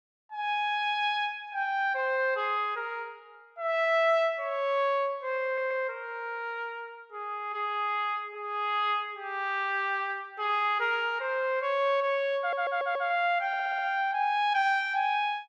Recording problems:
audio stuttering; at 5.5 s, at 12 s and at 13 s

